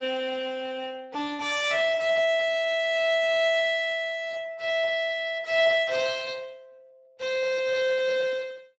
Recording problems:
codec artefacts; Speex, log-spectral distance 4 dB, nothing above 7.6 kHz

